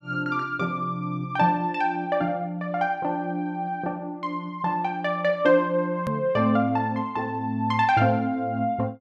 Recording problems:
hard cut with a click; at 6 s

